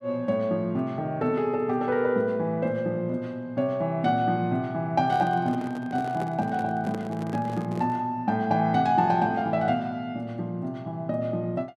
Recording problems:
handling noise; from 5 to 8 s; peak -5 dB vs average level

